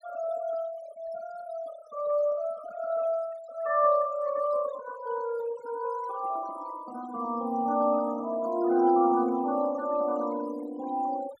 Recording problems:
noise reduction artefacts; signal-to-artefact ratio 19 dB

